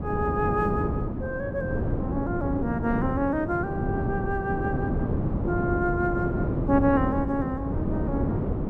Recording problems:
wind on the microphone; below 330 Hz, SNR 0 dB

